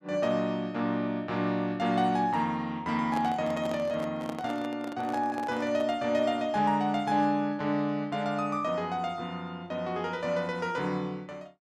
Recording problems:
handling noise; from 3 to 6 s; peak -4 dB vs average level

